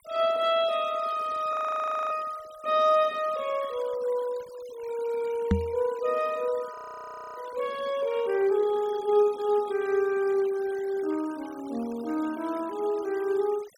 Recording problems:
denoising artefacts; signal-to-artefact ratio 21 dB
frozen audio; at 1.5 s for 0.5 s and at 6.5 s for 0.5 s
knock on the microphone; at 5.5 s; peak +7 dB vs average level

